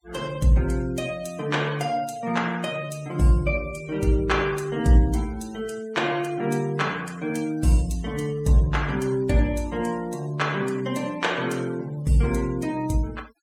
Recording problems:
denoising artefacts; signal-to-artefact ratio 20 dB

